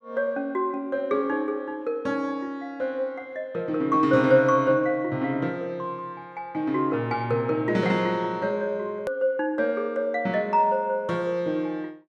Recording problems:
click at an edit; at 9 s

